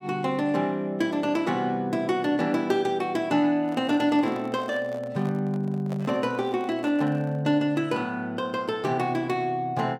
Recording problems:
microphone handling noise; from 3.5 to 7.5 s; peak -9 dB vs average level

